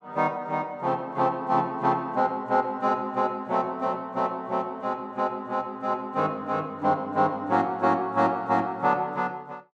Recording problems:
none

